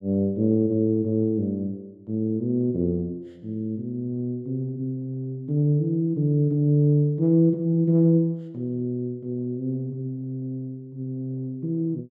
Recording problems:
none

